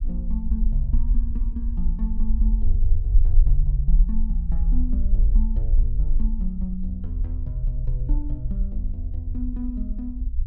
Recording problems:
rumble; below 46 Hz, SNR -7 dB

